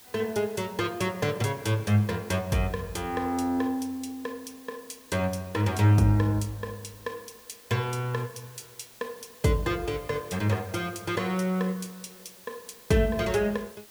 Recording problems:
background hiss; slope -1 dB per octave, SNR 21 dB

